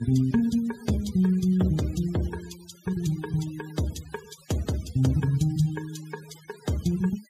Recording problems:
denoising artefacts; signal-to-artefact ratio 20 dB

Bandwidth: 15.5 kHz